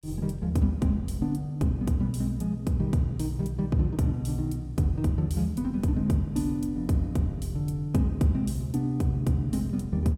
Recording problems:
none

